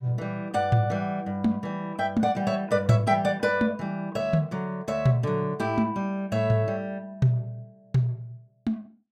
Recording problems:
none

